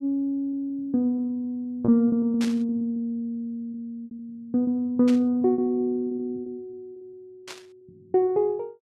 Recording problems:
packet loss; 14% of the sound replaced, filled with repeated pitch periods
burst of static; at 2.5 s, at 5 s and at 7.5 s; peak -6 dB vs average level

